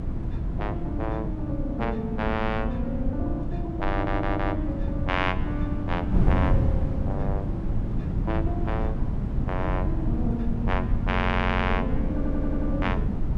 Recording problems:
wind noise; below 150 Hz, SNR -2 dB
stutter; at 4 s, at 11 s and at 12 s

